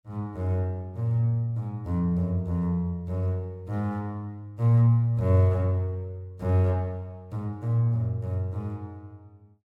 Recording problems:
none

